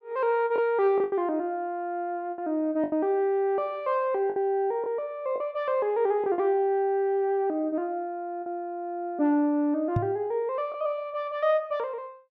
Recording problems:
lost packets; 4% of the sound replaced, filled with the last packet
knock on the microphone; at 10 s; peak +4 dB vs average level

